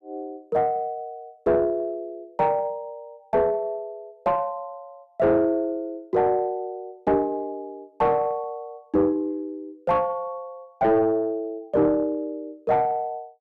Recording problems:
distorted audio; soft clipping, signal-to-distortion ratio 11 dB

